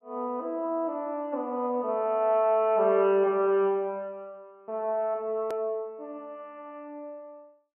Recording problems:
low-pass filter; nothing above 3.1 kHz
edit click; at 5.5 s

